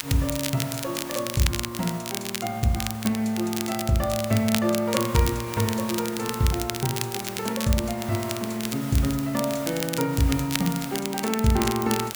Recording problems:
hiss; slope -3 dB per octave, SNR 14 dB
crackling; vinyl, SNR 6 dB

